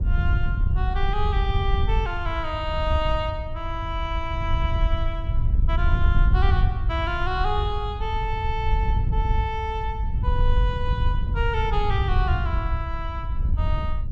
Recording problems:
wind noise; below 82 Hz, SNR -4 dB

